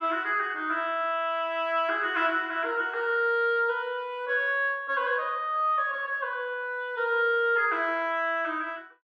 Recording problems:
none

